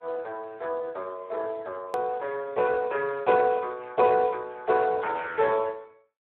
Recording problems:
telephone audio; 340 Hz to 2.5 kHz, Speex
click at an edit; at 2 s

